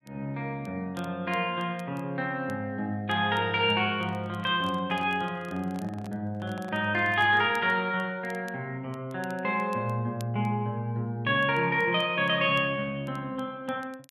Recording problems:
crackle; vinyl, SNR 29 dB
microphone handling noise; from 4 to 7.5 s; peak -12 dB vs average level

